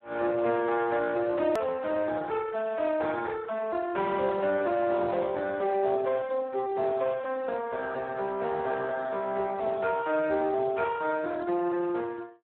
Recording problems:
phone line; 260 Hz to 2.6 kHz, Speex
edit click; at 1.5 s

